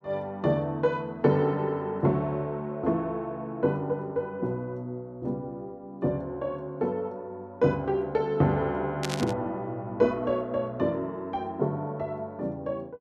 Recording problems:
static burst; at 9 s; peak +1 dB vs average level

